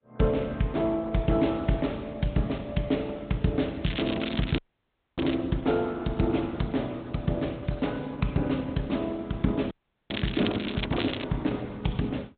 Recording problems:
treble cut off; nothing above 3.9 kHz
codec artefacts; Opus, log-spectral distance 4 dB
crackle; from 4 to 5.5 s, at 10 s and at 11 s; loose cable, SNR 9 dB
dropout; at 4.5 s for 0.5 s and at 9.5 s

